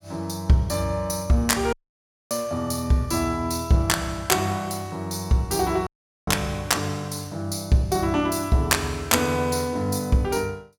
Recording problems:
dropout; at 1.5 s for 0.5 s and at 6 s

